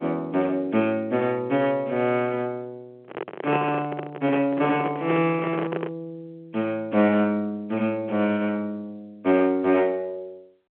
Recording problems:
telephone audio; 220 Hz to 3.2 kHz, G.711
microphone handling noise; from 3 to 6 s; peak -1 dB vs average level

